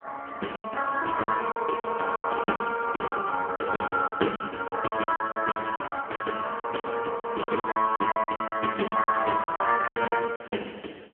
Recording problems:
phone line; 240 Hz to 3.2 kHz, AMR-NB
lost packets; 16% of the sound replaced, filled with silence

